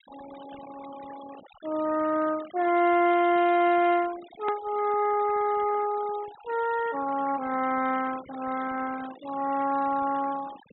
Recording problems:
treble cut off; nothing above 3.9 kHz
noise reduction artefacts; signal-to-artefact ratio 19 dB
edit click; at 4.5 s

